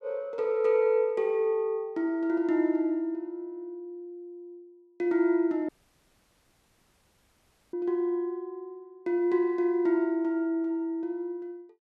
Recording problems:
audio cutting out; at 5.5 s for 2 s

